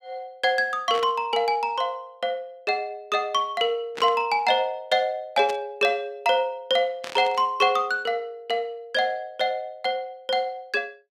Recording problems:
static burst; 4 times, first at 1 s; peak -7 dB vs average level

